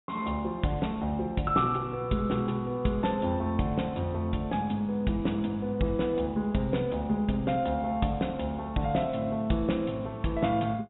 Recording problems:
treble cut off; nothing above 3.8 kHz

